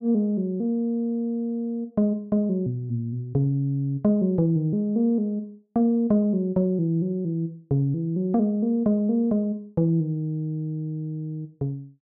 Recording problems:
none

